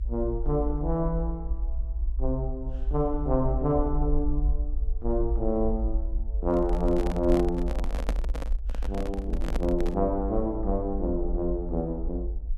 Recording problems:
rumble; below 54 Hz, SNR 3 dB
microphone handling noise; from 6.5 to 10 s; peak 0 dB vs average level

